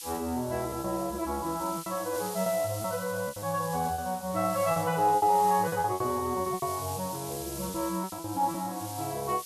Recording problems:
hiss; SNR 11 dB
lost packets; 10% of the sound replaced, filled with repeated pitch periods

